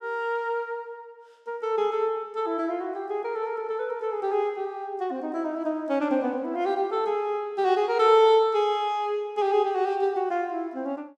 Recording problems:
none

